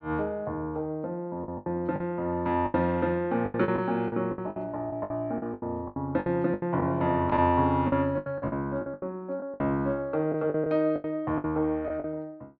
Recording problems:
lost packets; 14% of the sound replaced, filled with the last packet

